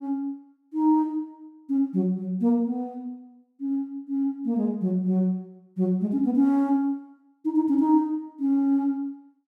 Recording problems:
none

